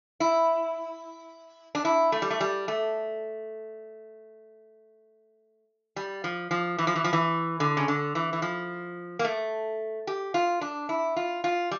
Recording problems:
treble missing; nothing above 6.9 kHz

